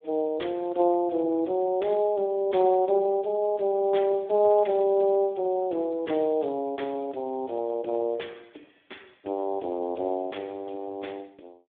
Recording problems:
phone line; 240 Hz to 3.5 kHz, Speex

